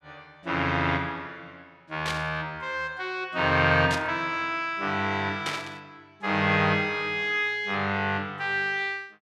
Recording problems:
burst of static; at 2 s, at 4 s and at 5.5 s; peak -1 dB vs average level

